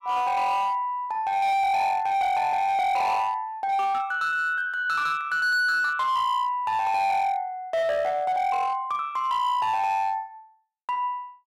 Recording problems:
distorted audio; hard clipping, signal-to-distortion ratio 11 dB

